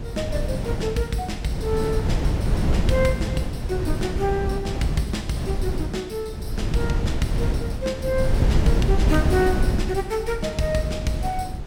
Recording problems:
wind on the microphone; below 160 Hz, SNR -1 dB

